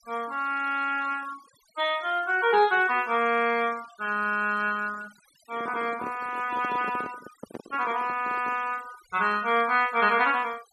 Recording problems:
denoising artefacts; signal-to-artefact ratio 22 dB
handling noise; from 5.5 to 8.5 s; peak -8 dB vs average level

